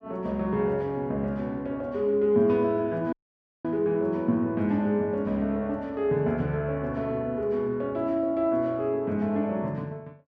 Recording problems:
dropout; at 3 s for 0.5 s

